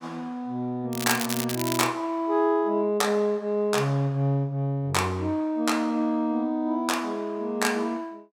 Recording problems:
crackle; at 1 s; loose cable, SNR 5 dB

